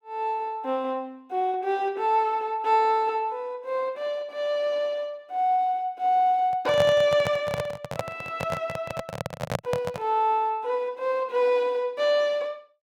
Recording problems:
microphone handling noise; from 6.5 to 10 s; peak +3 dB vs average level

